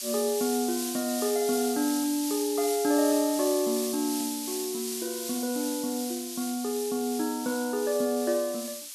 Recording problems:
background hiss; slope +6 dB per octave, SNR 5 dB

